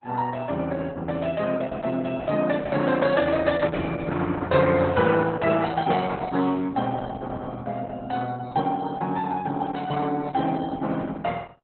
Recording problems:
lossy compression; Opus, log-spectral distance 4 dB, nothing above 4 kHz

